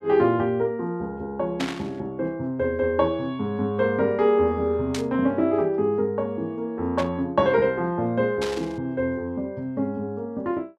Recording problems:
static burst; 4 times, first at 1.5 s; peak -1 dB vs average level

